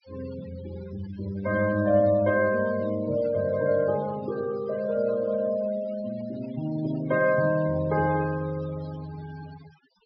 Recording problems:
treble cut off; nothing above 5.5 kHz
noise reduction artefacts; signal-to-artefact ratio 19 dB

